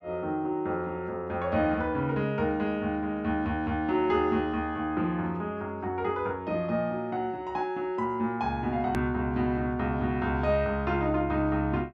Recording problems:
click at an edit; at 9 s

